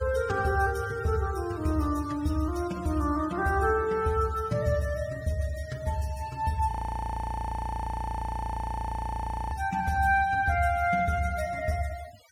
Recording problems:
denoising artefacts; signal-to-artefact ratio 21 dB
frozen audio; at 6.5 s for 3 s

